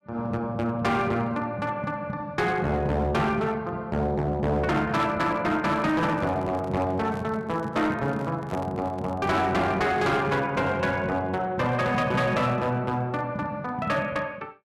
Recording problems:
distorted audio; hard clipping, signal-to-distortion ratio 11 dB
handling noise; from 5.5 to 9.5 s; peak -9 dB vs average level

